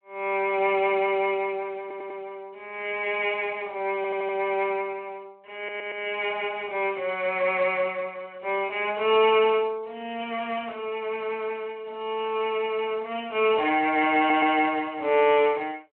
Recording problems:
phone line; 340 Hz to 3.2 kHz, Speex
audio stuttering; 4 times, first at 2 s

